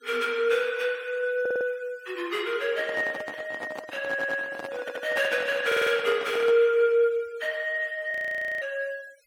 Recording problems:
denoising artefacts; signal-to-artefact ratio 24 dB
stutter; 4 times, first at 1.5 s
microphone handling noise; from 2.5 to 6.5 s; peak -5 dB vs average level
frozen audio; at 8 s for 0.5 s

